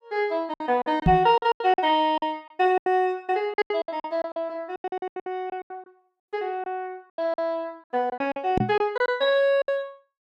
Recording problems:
lost packets; 16% of the sound replaced, filled with silence
microphone thump; at 1 s and at 8.5 s; peak +7 dB vs average level

